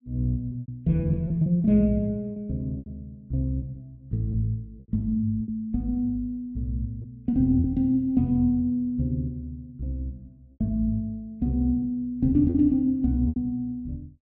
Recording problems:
lost packets; 5% of the sound replaced, filled with repeated pitch periods

